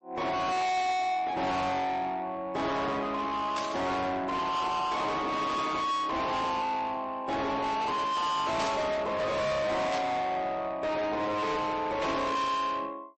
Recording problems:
lossy compression; MP3, log-spectral distance 2 dB, nothing above 8.2 kHz
distorted audio; soft clipping, signal-to-distortion ratio 6 dB
static burst; 4 times, first at 3.5 s; peak -4 dB vs average level

